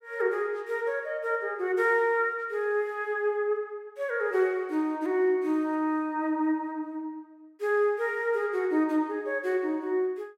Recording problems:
none

